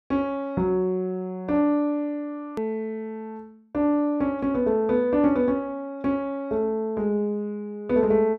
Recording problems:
hard cut with a click; at 2.5 s

